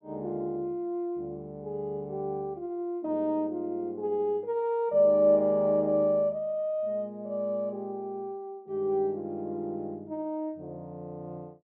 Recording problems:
none

